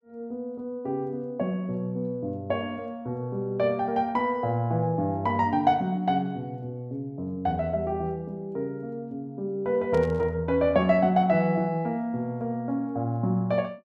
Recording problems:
burst of static; at 10 s; peak -14 dB vs average level

